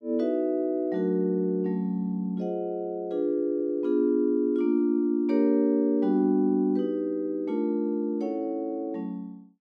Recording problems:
none

